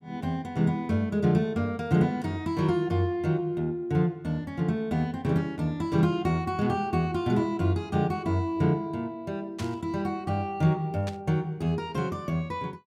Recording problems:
static burst; at 9.5 s and at 11 s; peak -8 dB vs average level

